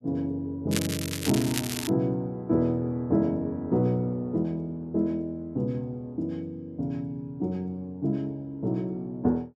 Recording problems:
crackling; from 0.5 to 2 s; loose cable, SNR 4 dB

